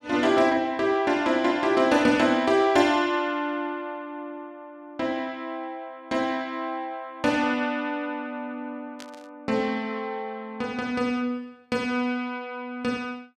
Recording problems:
burst of static; at 9 s; peak -12 dB vs average level

